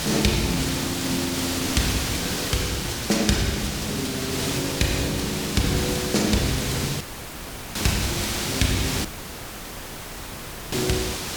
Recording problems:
background hiss; slope -2 dB per octave, SNR 1 dB
dropout; at 7 s for 0.5 s and at 9 s for 1.5 s

